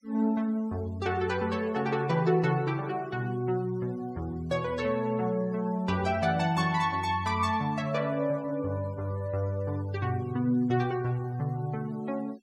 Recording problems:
noise reduction artefacts; signal-to-artefact ratio 25 dB

